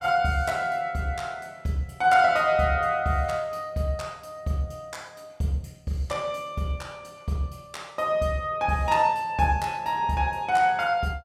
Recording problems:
none

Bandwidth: 16 kHz